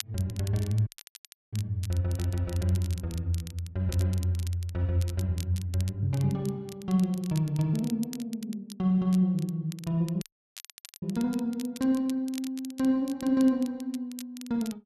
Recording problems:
crackling; vinyl, SNR 18 dB
audio cutting out; at 1 s for 0.5 s and at 10 s for 1 s

